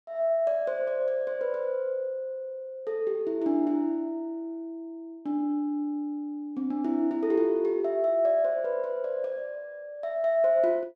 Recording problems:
none

